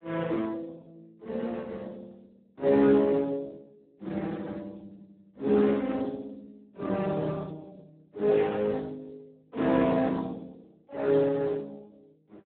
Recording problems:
phone line; 190 Hz to 4 kHz, Speex

